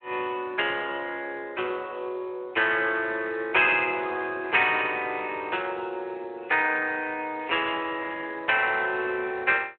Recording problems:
phone line; 300 Hz to 3.3 kHz, Speex

